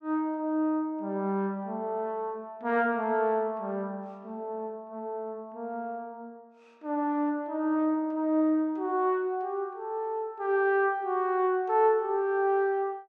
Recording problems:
none

